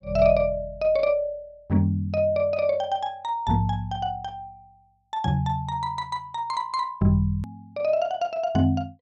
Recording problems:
click at an edit; at 7.5 s

